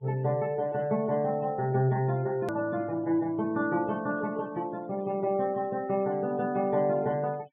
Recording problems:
low-pass filter; nothing above 3.5 kHz
denoising artefacts; signal-to-artefact ratio 25 dB
click at an edit; at 2.5 s

